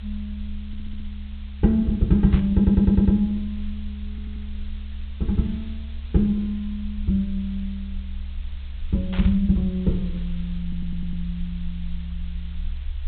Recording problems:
treble cut off; nothing above 4 kHz
hiss; SNR 27 dB
low-frequency rumble; below 70 Hz, SNR 12 dB
audio stuttering; 4 times, first at 0.5 s
static burst; at 2.5 s and at 9 s; peak -9 dB vs average level

